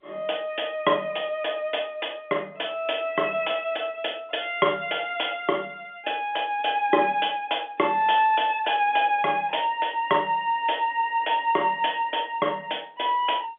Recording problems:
telephone audio; 170 Hz to 3.5 kHz, G.711

